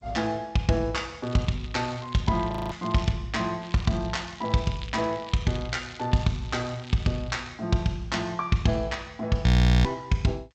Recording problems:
codec artefacts; G.722, log-spectral distance 7 dB, nothing above 16.1 kHz
crackle; from 1 to 3 s and from 3.5 to 7.5 s; loose cable, SNR 20 dB
frozen audio; at 2.5 s and at 9.5 s

